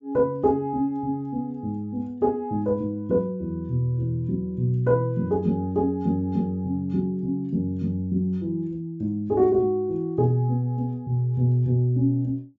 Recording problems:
treble cut off; nothing above 7.4 kHz

